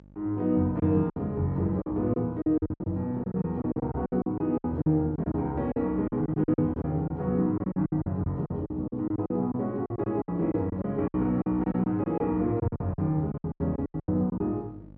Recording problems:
mains hum; 50 Hz, harmonics up to 850 Hz, SNR 24 dB
lost packets; 16% of the sound replaced, filled with silence

